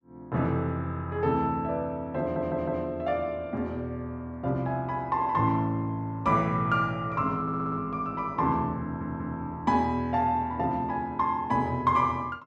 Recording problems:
stutter; at 2 s, at 7.5 s and at 9 s

